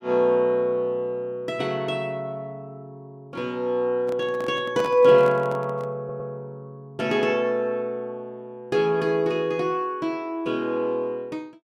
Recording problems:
microphone handling noise; from 4 to 6 s; peak -5 dB vs average level
stutter; at 6 s

